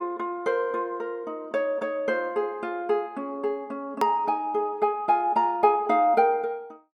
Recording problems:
hard cut with a click; at 4 s

